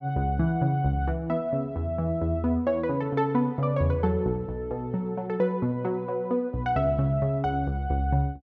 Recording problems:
none

